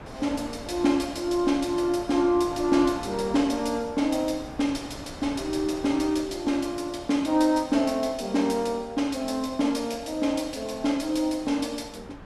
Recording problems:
wind on the microphone; below 960 Hz, SNR 17 dB

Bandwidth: 15 kHz